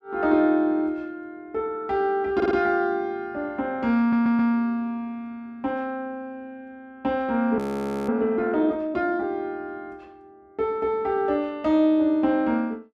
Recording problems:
audio stuttering; at 2.5 s and at 4 s
frozen audio; at 7.5 s for 0.5 s

